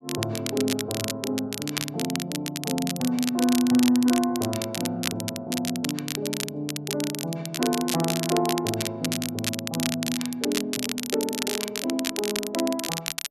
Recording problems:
crackling; vinyl, SNR 4 dB

